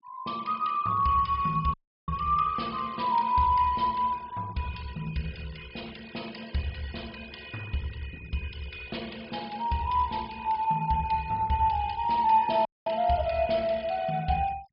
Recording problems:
low-pass filter; nothing above 5.5 kHz
noise reduction artefacts; signal-to-artefact ratio 22 dB
audio cutting out; at 1.5 s and at 13 s

